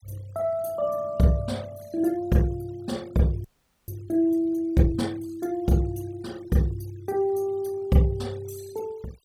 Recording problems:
denoising artefacts; signal-to-artefact ratio 26 dB
audio freezing; at 3.5 s

